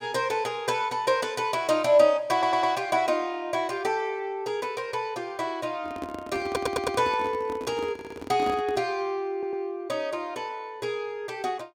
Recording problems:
audio stuttering; 4 times, first at 2.5 s
handling noise; from 6 to 9 s; peak -4 dB vs average level

